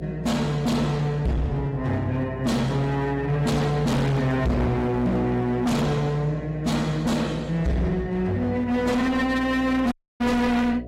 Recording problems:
codec artefacts; AAC, log-spectral distance 2 dB, nothing above 16 kHz
distortion; hard clipping, signal-to-distortion ratio 6 dB
hum; 60 Hz, harmonics up to 720 Hz, SNR 14 dB
audio cutting out; at 10 s

